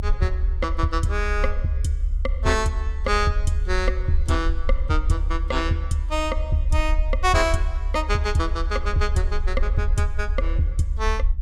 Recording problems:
rumble; below 66 Hz, SNR 1 dB

